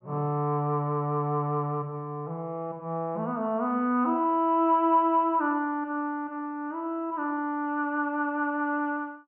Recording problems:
treble cut off; nothing above 3.1 kHz

